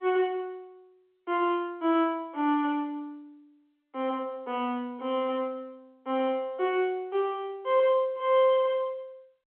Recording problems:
telephone audio; 260 Hz to 3.3 kHz, G.711

